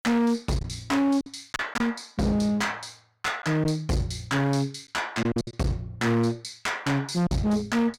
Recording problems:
distortion; hard clipping, uneven, signal-to-distortion ratio 6 dB
lost packets; 5% of the sound replaced, filled with silence

